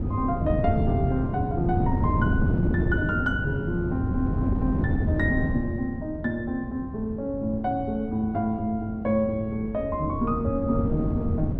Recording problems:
wind on the microphone; below 230 Hz, SNR 0 dB

